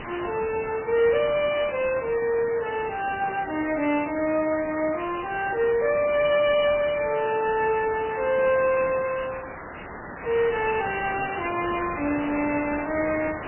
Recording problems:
lossy codec; MP3, log-spectral distance 12 dB, nothing above 2.4 kHz
distorted audio; soft clipping, signal-to-distortion ratio 5 dB
background hiss; SNR 10 dB

